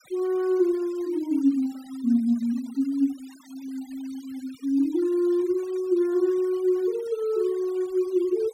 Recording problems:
denoising artefacts; signal-to-artefact ratio 26 dB

